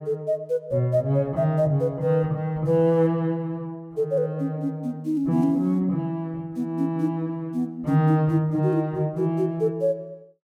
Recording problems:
none

